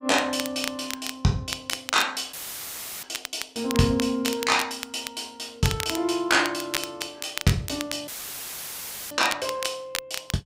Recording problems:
crackle; vinyl, SNR 7 dB
dropout; at 2.5 s for 0.5 s and at 8 s for 1 s; filled with static

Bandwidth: 15.5 kHz